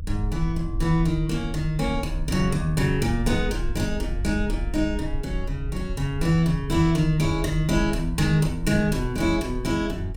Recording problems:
rumble; below 62 Hz, strongest tone 38 Hz, SNR 8 dB

